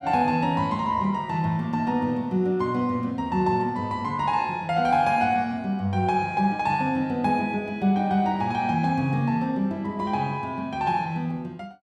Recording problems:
none

